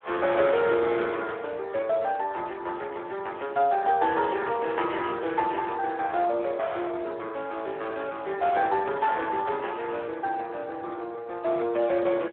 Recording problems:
phone line; 300 Hz to 3.6 kHz, Speex

